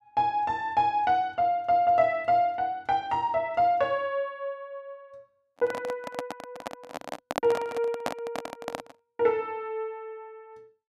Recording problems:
microphone handling noise; from 5.5 to 9 s; peak +2 dB vs average level

